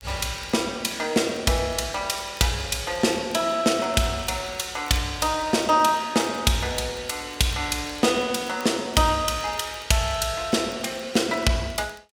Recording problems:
crackling; vinyl, SNR 27 dB

